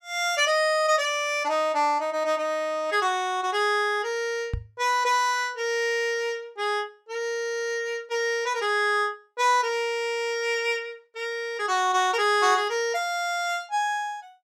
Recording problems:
knock on the microphone; at 4.5 s; peak -1 dB vs average level

